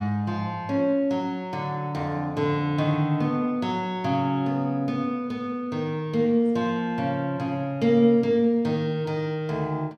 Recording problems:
none

